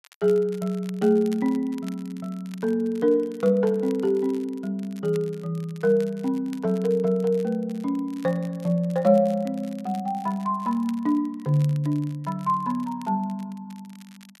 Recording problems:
crackling; vinyl, SNR 26 dB

